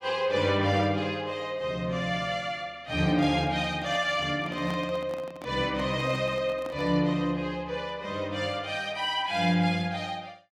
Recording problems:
handling noise; from 3 to 7 s; peak -7 dB vs average level

